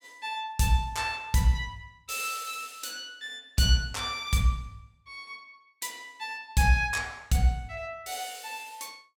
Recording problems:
none

